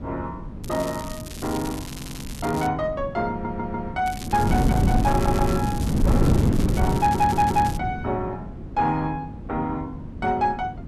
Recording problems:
distorted audio; soft clipping, signal-to-distortion ratio 11 dB
wind on the microphone; below 250 Hz, SNR 1 dB
crackle; from 0.5 to 2.5 s and from 4 to 8 s; loose cable, SNR 13 dB
audio stuttering; 4 times, first at 2 s

